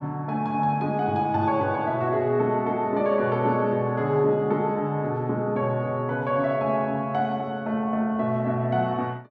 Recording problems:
none

